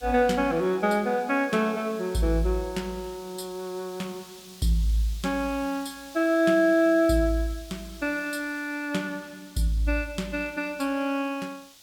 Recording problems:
background hiss; SNR 21 dB

